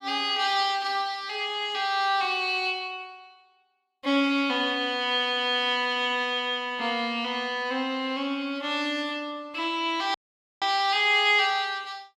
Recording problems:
dropout; at 10 s

